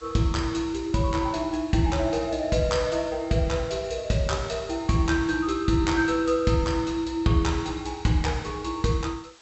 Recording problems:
treble cut off; nothing above 7.9 kHz
background hiss; slope 0 dB per octave, SNR 27 dB

